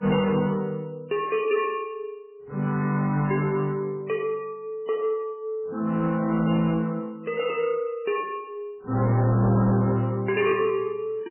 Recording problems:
lossy codec; MP3, log-spectral distance 2 dB, nothing above 2.4 kHz
distorted audio; soft clipping, signal-to-distortion ratio 11 dB

